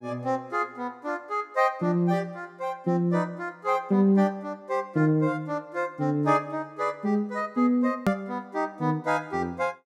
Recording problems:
click at an edit; at 8 s

